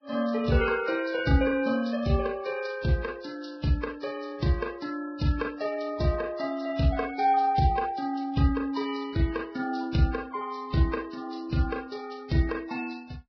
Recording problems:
codec artefacts; Vorbis, then Vorbis, log-spectral distance 4 dB, nothing above 5.5 kHz

